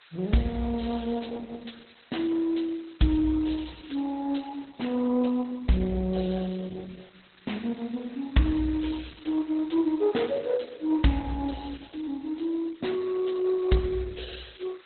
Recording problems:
lossy compression; MP2, then Opus, log-spectral distance 16 dB, nothing above 4.1 kHz
hiss; SNR 27 dB

